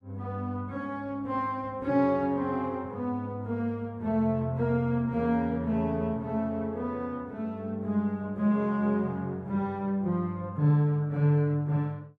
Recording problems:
none

